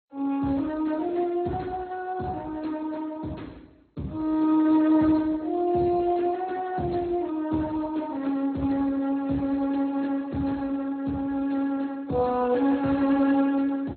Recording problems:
lossy compression; Speex, then MP2, log-spectral distance 3 dB, nothing above 4.2 kHz

